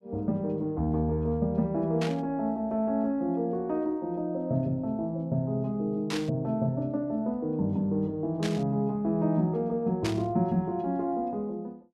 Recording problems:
static burst; 4 times, first at 2 s; peak -2 dB vs average level

